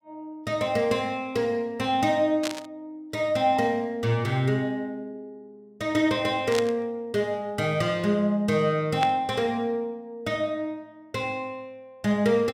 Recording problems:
burst of static; at 2.5 s, at 6.5 s and at 9 s; peak -1 dB vs average level

